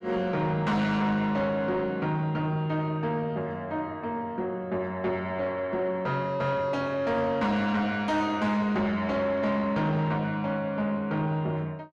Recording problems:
distorted audio; soft clipping, signal-to-distortion ratio 11 dB

